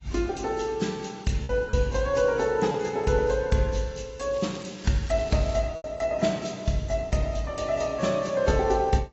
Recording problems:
codec artefacts; AAC, log-spectral distance 4 dB, nothing above 7.6 kHz
lost packets; 2% of the sound replaced, filled with repeated pitch periods
crackle; from 4.5 to 5.5 s; loose cable, SNR 21 dB

